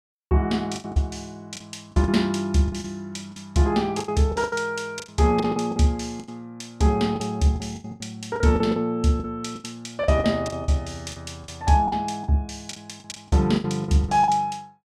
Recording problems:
lost packets; 14% of the sound replaced, filled with the last packet

